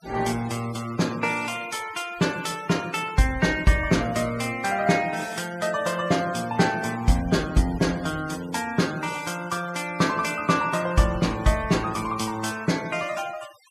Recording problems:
denoising artefacts; signal-to-artefact ratio 17 dB

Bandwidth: 14.5 kHz